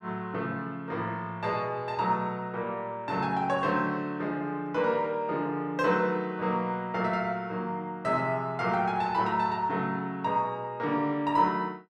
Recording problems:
none

